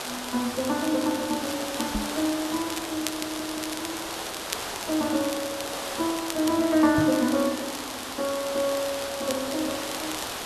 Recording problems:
hiss; slope -3 dB per octave, SNR 5 dB
crackle; vinyl, SNR 11 dB
microphone bump; at 2 s and at 7 s; peak +2 dB vs average level
stutter; at 3 s

